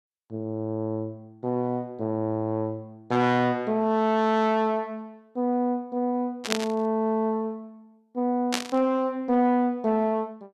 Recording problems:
distortion; soft clipping, signal-to-distortion ratio 11 dB
burst of static; at 6.5 s and at 8.5 s; peak +4 dB vs average level

